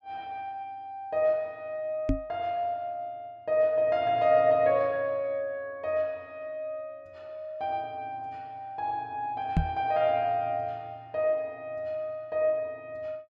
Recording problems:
microphone bump; at 2 s and at 9.5 s; peak +7 dB vs average level

